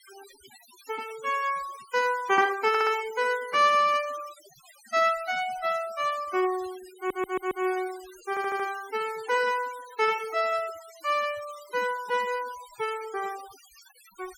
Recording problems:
denoising artefacts; signal-to-artefact ratio 18 dB
stutter; at 2.5 s, at 7 s and at 8.5 s

